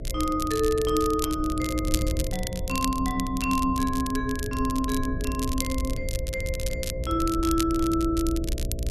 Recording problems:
electrical hum; 60 Hz, harmonics up to 660 Hz, SNR 10 dB
wind on the microphone; below 84 Hz, SNR 7 dB
crackling; vinyl, SNR 9 dB

